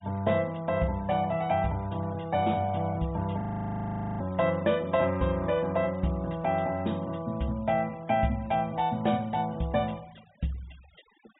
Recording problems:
low-pass filter; nothing above 4 kHz
denoising artefacts; signal-to-artefact ratio 25 dB
audio freezing; at 3.5 s for 1 s

